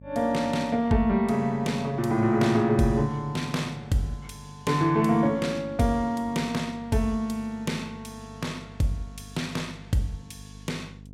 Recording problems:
hum; 50 Hz, harmonics up to 500 Hz, SNR 20 dB

